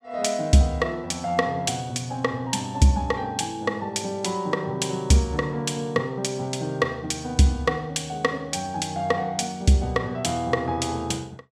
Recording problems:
none

